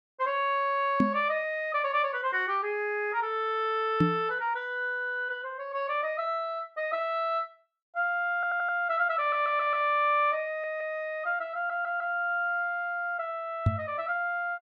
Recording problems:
microphone bump; at 1 s, at 4 s and at 14 s; peak +8 dB vs average level
audio stuttering; 4 times, first at 8.5 s

